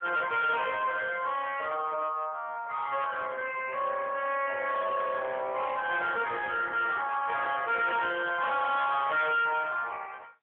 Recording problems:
phone line; 370 Hz to 3.6 kHz, AMR-NB
distortion; hard clipping, uneven, signal-to-distortion ratio 10 dB

